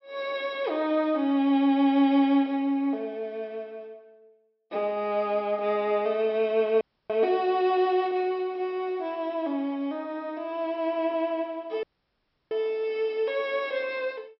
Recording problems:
low-pass filter; nothing above 5.5 kHz
audio cutting out; at 7 s and at 12 s for 0.5 s

